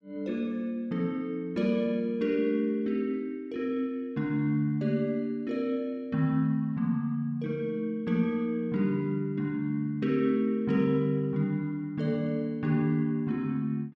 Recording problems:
none

